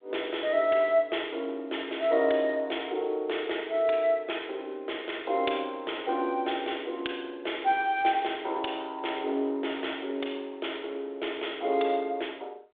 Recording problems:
telephone audio; 300 Hz to 3.7 kHz, G.726

